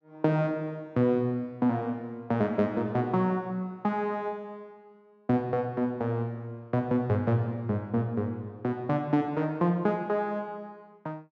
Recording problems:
none

